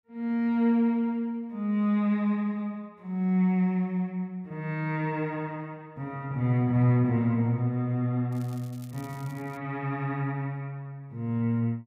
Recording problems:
crackling; from 8.5 to 9.5 s; loose cable, SNR 26 dB

